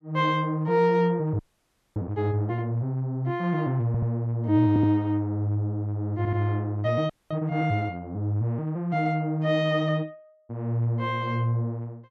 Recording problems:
frozen audio; at 1.5 s for 0.5 s and at 7 s
stutter; at 4 s, at 4.5 s and at 6 s

